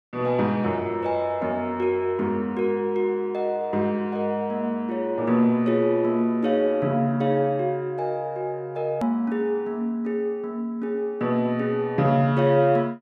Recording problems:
edit click; at 9 s

